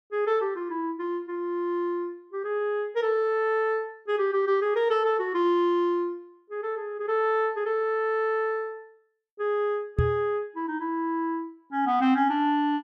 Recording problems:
microphone thump; at 10 s; peak +5 dB vs average level

